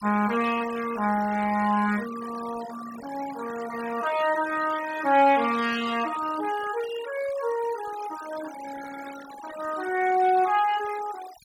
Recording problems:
denoising artefacts; signal-to-artefact ratio 15 dB

